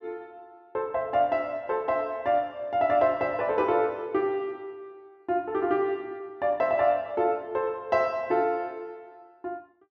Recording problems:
none

